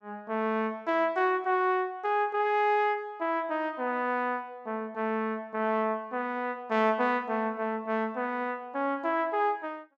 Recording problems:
none

